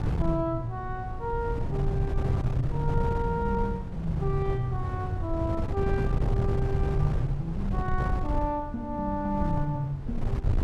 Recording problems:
wind on the microphone; below 130 Hz, SNR 0 dB

